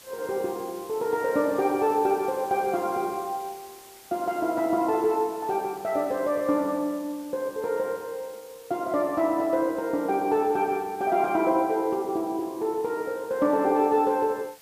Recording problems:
background hiss; slope -1 dB per octave, SNR 22 dB

